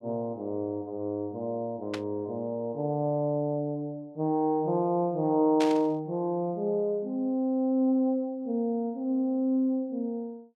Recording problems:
static burst; at 2 s and at 5.5 s; peak -2 dB vs average level

